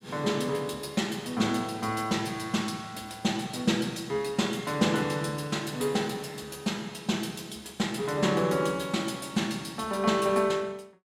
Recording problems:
none

